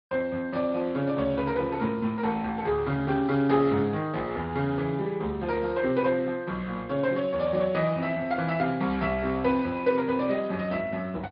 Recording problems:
treble cut off; nothing above 4.8 kHz
lossy codec; Speex, log-spectral distance 3 dB

